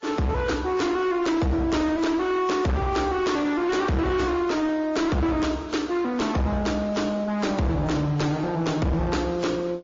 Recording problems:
lossy codec; Opus, then MP3, log-spectral distance 3 dB, nothing above 6.3 kHz
distortion; hard clipping, signal-to-distortion ratio 8 dB

